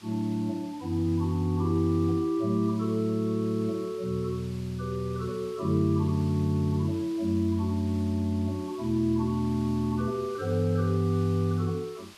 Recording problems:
background hiss; slope 0 dB per octave, SNR 23 dB

